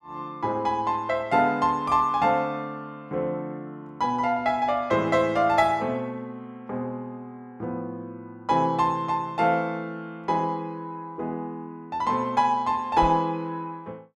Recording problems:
knock on the microphone; at 13 s; peak -4 dB vs average level

